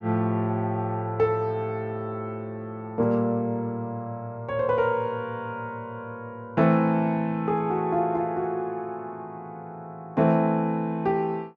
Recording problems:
none

